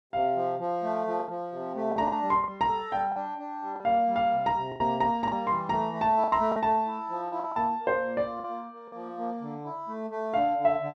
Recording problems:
lost packets; 7% of the sound replaced, filled with the last packet

